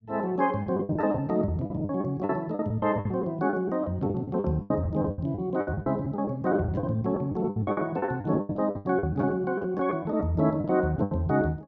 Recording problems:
packet loss; 18% of the sound replaced, filled with the last packet

